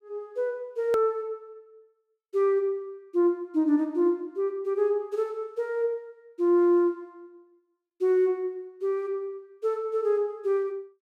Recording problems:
edit click; at 1 s

